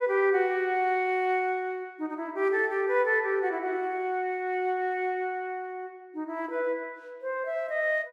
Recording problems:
none

